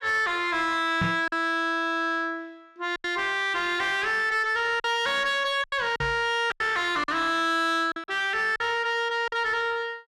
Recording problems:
distorted audio; soft clipping, signal-to-distortion ratio 11 dB
packet loss; 6% of the sound replaced, filled with silence
microphone thump; at 1 s and at 6 s; peak +2 dB vs average level

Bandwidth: 13.5 kHz